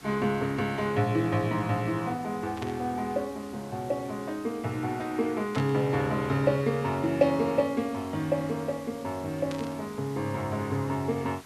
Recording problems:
hiss; slope -2 dB per octave, SNR 20 dB
burst of static; at 2.5 s, at 5.5 s and at 9.5 s; peak -7 dB vs average level

